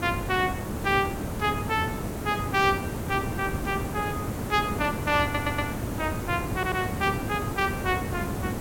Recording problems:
background hiss; slope -7 dB per octave, SNR 4 dB
stutter; at 5 s and at 6.5 s

